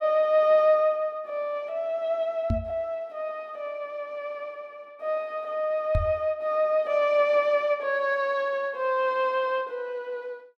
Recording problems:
knock on the microphone; at 2.5 s and at 6 s; peak +2 dB vs average level

